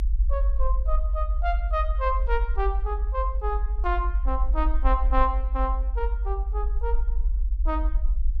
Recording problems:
low-frequency rumble; below 56 Hz, strongest tone 44 Hz, SNR -4 dB

